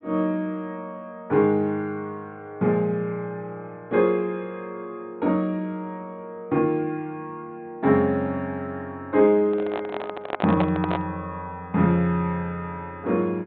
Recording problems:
treble cut off; nothing above 4 kHz
microphone handling noise; from 9.5 to 11 s; peak +2 dB vs average level

